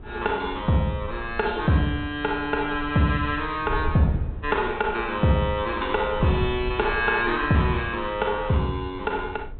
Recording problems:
treble missing; nothing above 4 kHz
wind noise; below 86 Hz, SNR 14 dB

